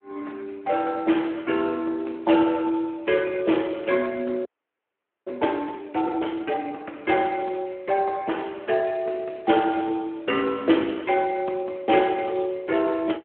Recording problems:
telephone audio; 260 Hz to 3.1 kHz, Speex
audio freezing; at 4.5 s for 1 s

